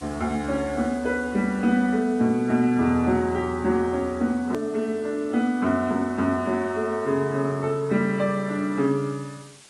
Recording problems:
codec artefacts; AAC, log-spectral distance 3 dB, nothing above 13.1 kHz
background hiss; slope 0 dB per octave, SNR 25 dB
click at an edit; at 4.5 s

